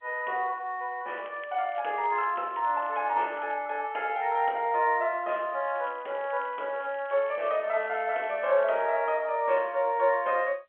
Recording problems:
telephone audio; 320 Hz to 3.3 kHz, G.711
crackling; from 1 to 3.5 s and from 5.5 to 9 s; loose cable, SNR 27 dB

